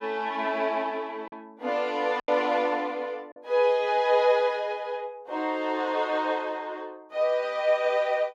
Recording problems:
packet loss; 2% of the sound replaced, filled with silence

